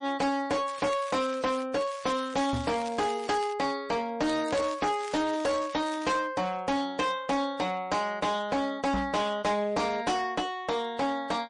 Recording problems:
codec artefacts; MP3, then MP3, log-spectral distance 3 dB, nothing above 9 kHz
distortion; hard clipping, signal-to-distortion ratio 7 dB
crackle; at 0.5 s, from 2 to 3.5 s and from 4.5 to 6 s; loose cable, SNR 17 dB
microphone thump; at 2.5 s and at 9 s; peak 0 dB vs average level

